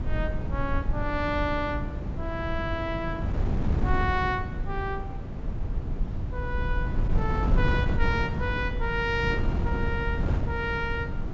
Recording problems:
treble cut off; nothing above 7.5 kHz
low-frequency rumble; below 66 Hz, SNR 7 dB
wind on the microphone; below 160 Hz, SNR 0 dB

